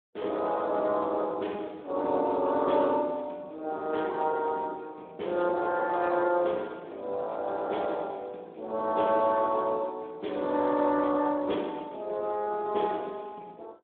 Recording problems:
phone line; 220 Hz to 3.6 kHz, Speex

